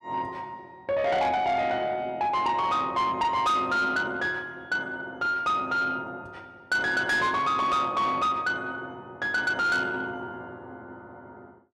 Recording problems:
distorted audio; soft clipping, signal-to-distortion ratio 11 dB

